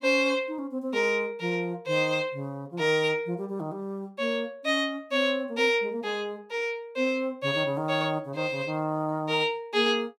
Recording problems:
none

